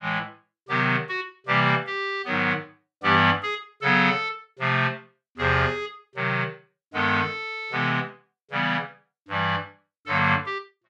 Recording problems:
none

